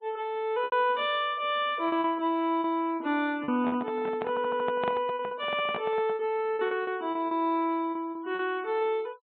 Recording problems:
treble missing; nothing above 4 kHz
denoising artefacts; signal-to-artefact ratio 27 dB
lost packets; 9% of the sound replaced, filled with repeated pitch periods
handling noise; from 3.5 to 6 s; peak -2 dB vs average level
audio stuttering; at 4.5 s

